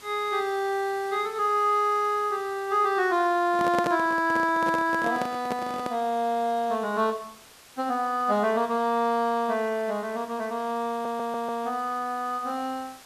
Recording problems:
background hiss; slope -1 dB per octave, SNR 23 dB
microphone handling noise; from 3.5 to 6 s; peak +1 dB vs average level
audio stuttering; at 11 s

